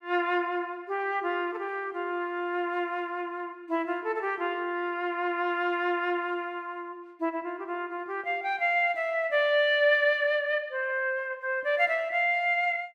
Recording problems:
none

